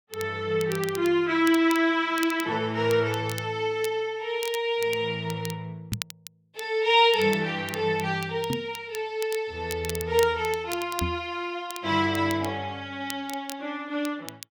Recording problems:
crackle; vinyl, SNR 15 dB
microphone bump; at 6 s, at 8.5 s and at 11 s; peak 0 dB vs average level

